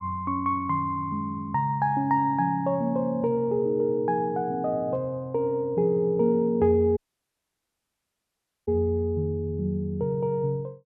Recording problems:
dropout; at 7 s for 1.5 s

